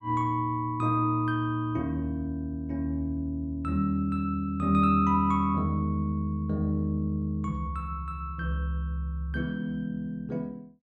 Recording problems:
none

